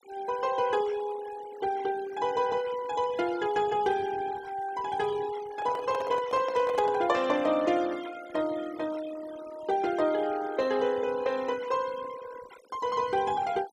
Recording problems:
denoising artefacts; signal-to-artefact ratio 19 dB
handling noise; from 5.5 to 7 s; peak -1 dB vs average level

